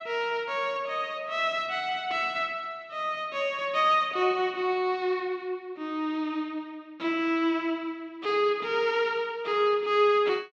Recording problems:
none

